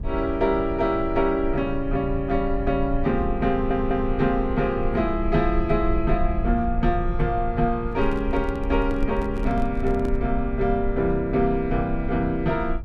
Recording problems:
rumble; below 56 Hz, SNR 8 dB
audio stuttering; at 3.5 s
handling noise; from 8 to 10 s; peak -7 dB vs average level

